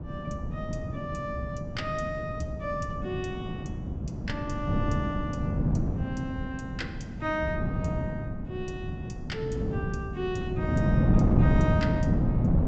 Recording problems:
treble missing; nothing above 8 kHz
wind noise; below 220 Hz, SNR -5 dB

